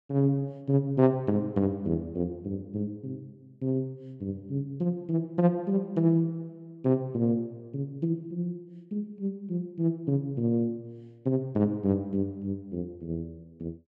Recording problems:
none

